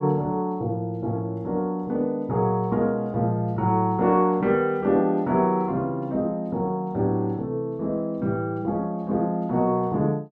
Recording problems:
none

